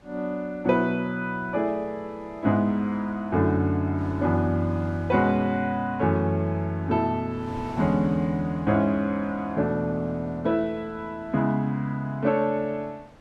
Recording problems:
wind on the microphone; below 940 Hz, SNR 23 dB

